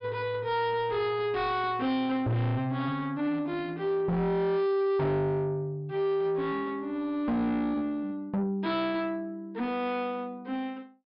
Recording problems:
low-pass filter; nothing above 5.5 kHz
distorted audio; soft clipping, signal-to-distortion ratio 8 dB

